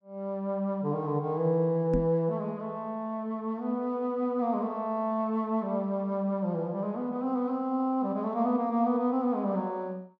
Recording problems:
microphone thump; at 2 s; peak +2 dB vs average level

